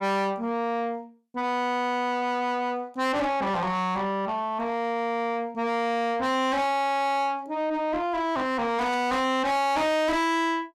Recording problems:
distorted audio; soft clipping, signal-to-distortion ratio 7 dB
static burst; at 9 s; peak -14 dB vs average level

